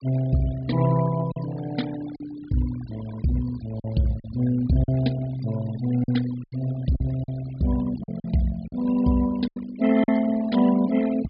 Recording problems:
low-pass filter; nothing above 4.9 kHz
denoising artefacts; signal-to-artefact ratio 16 dB
packet loss; 6% of the sound replaced, filled with silence

